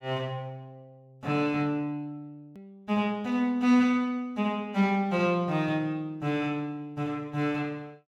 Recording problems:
click at an edit; at 2.5 s

